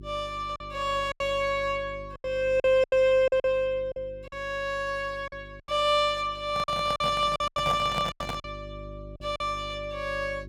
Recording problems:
hum; 50 Hz, harmonics up to 400 Hz, SNR 19 dB
lost packets; 9% of the sound replaced, filled with silence
handling noise; from 6.5 to 8.5 s; peak -2 dB vs average level

